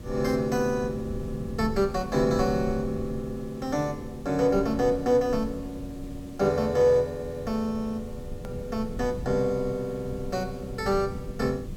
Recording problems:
hum; 60 Hz, harmonics up to 1.8 kHz, SNR 22 dB
background hiss; SNR 27 dB
low-frequency rumble; below 170 Hz, SNR 13 dB
hard cut with a click; at 8.5 s

